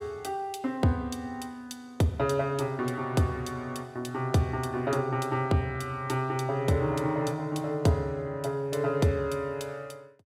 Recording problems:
none

